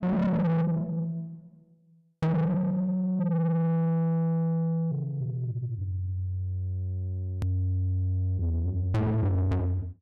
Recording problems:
distortion; soft clipping, signal-to-distortion ratio 7 dB
hard cut with a click; at 7.5 s

